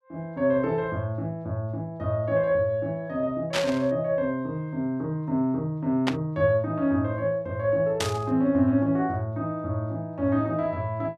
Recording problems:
burst of static; at 3.5 s, at 6 s and at 8 s; peak +3 dB vs average level

